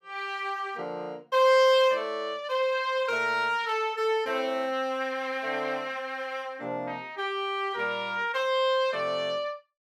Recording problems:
none

